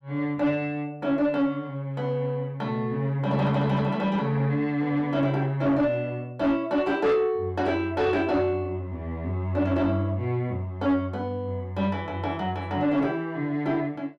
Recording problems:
distortion; soft clipping, signal-to-distortion ratio 11 dB

